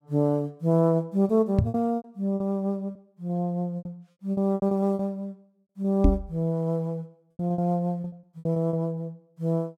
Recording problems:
packet loss; 12% of the sound replaced, filled with repeated pitch periods
knock on the microphone; at 1.5 s and at 6 s; peak +9 dB vs average level

